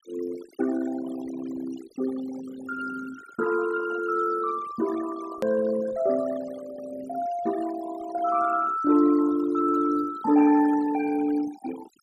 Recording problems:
noise reduction artefacts; signal-to-artefact ratio 15 dB
edit click; at 5.5 s

